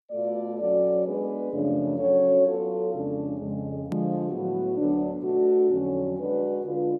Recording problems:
click at an edit; at 4 s

